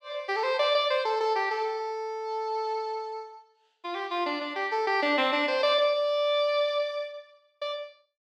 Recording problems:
none

